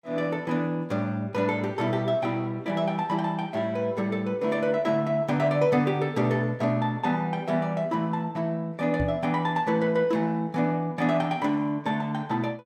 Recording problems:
microphone thump; at 9 s; peak 0 dB vs average level

